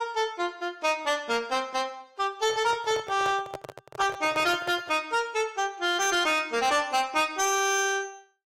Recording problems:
lossy compression; AAC, log-spectral distance 2 dB, nothing above 15.1 kHz
distortion; soft clipping, signal-to-distortion ratio 12 dB
handling noise; from 2.5 to 5 s; peak -5 dB vs average level

